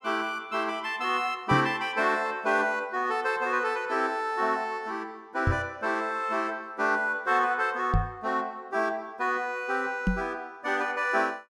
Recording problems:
knock on the microphone; 4 times, first at 1.5 s; peak +5 dB vs average level

